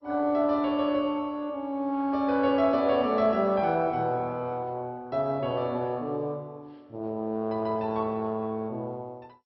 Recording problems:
lossy compression; MP2, log-spectral distance 2 dB, nothing above 4.6 kHz

